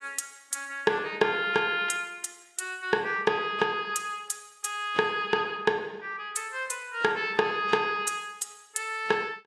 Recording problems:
lossy codec; AAC, log-spectral distance 3 dB, nothing above 11.3 kHz

